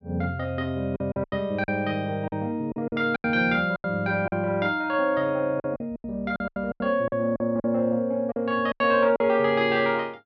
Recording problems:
lost packets; 11% of the sound replaced, filled with silence

